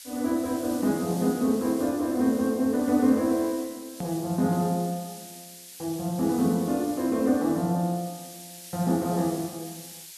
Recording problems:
hiss; SNR 16 dB
edit click; at 4 s

